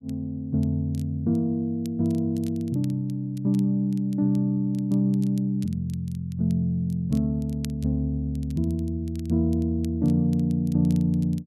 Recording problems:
crackle; vinyl, SNR 27 dB

